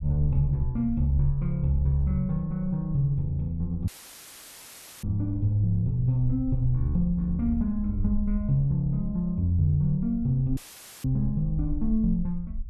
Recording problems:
low-frequency rumble; below 56 Hz, SNR 10 dB
audio cutting out; at 4 s for 1 s and at 11 s; filled with static

